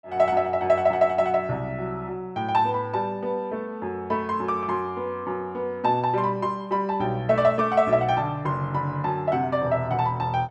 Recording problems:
none

